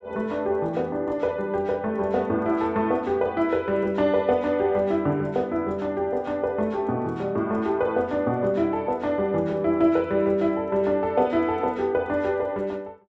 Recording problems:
none

